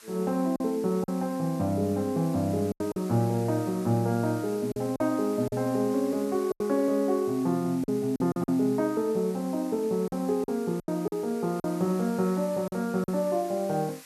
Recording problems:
hiss; slope +1 dB per octave, SNR 20 dB
lost packets; 6% of the sound replaced, filled with silence

